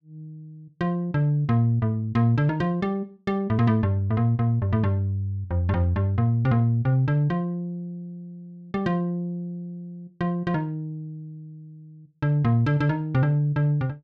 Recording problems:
none

